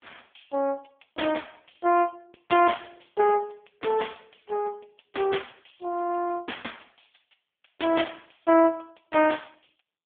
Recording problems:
telephone audio; 280 Hz to 3.4 kHz, AMR-NB

